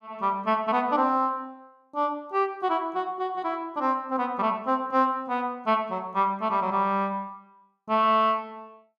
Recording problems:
none

